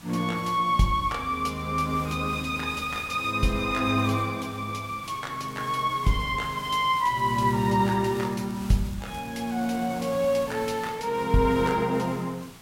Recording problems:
hiss; slope -2 dB per octave, SNR 17 dB
crackling; at 5.5 s and from 7 to 10 s; loose cable, SNR 27 dB

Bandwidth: 16 kHz